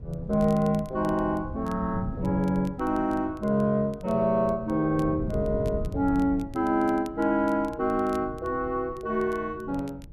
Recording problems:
wind on the microphone; below 160 Hz, SNR 13 dB
crackling; vinyl, SNR 29 dB

